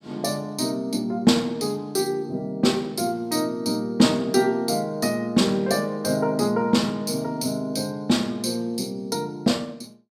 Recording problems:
none

